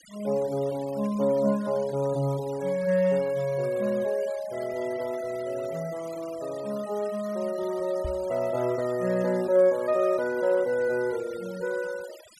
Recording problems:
noise reduction artefacts; signal-to-artefact ratio 21 dB
knock on the microphone; at 8 s; peak -4 dB vs average level

